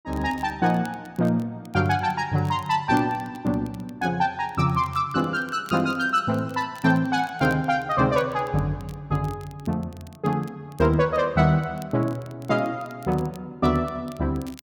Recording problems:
crackle; vinyl, SNR 27 dB

